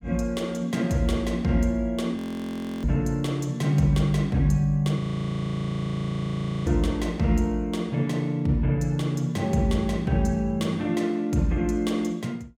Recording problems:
frozen audio; at 2 s for 0.5 s and at 5 s for 1.5 s

